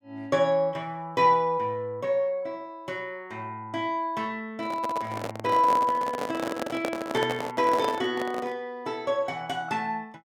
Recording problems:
handling noise; from 4.5 to 8.5 s; peak +2 dB vs average level

